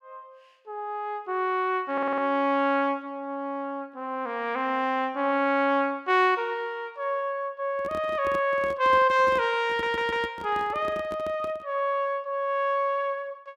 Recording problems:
stutter; at 2 s and at 9.5 s
microphone handling noise; from 7.5 to 12 s; peak -7 dB vs average level

